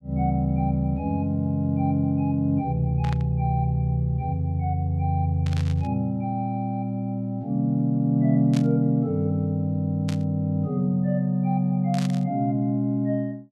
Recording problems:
static burst; 5 times, first at 3 s; peak -8 dB vs average level

